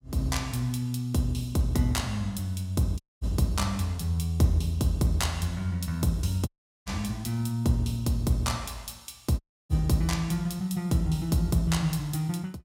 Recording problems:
dropout; at 3 s, at 6.5 s and at 9.5 s

